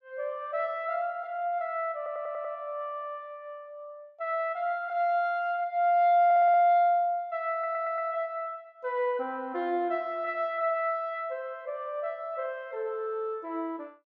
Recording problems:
stutter; at 2 s, at 6.5 s and at 7.5 s

